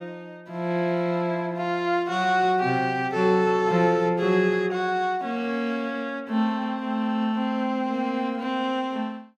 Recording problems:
none

